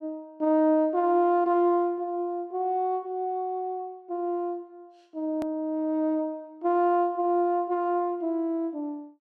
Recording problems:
edit click; at 5.5 s

